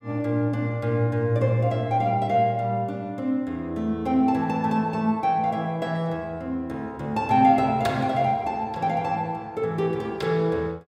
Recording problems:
none

